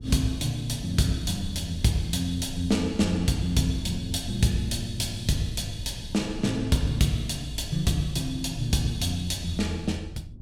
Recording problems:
rumble; below 130 Hz, SNR 13 dB

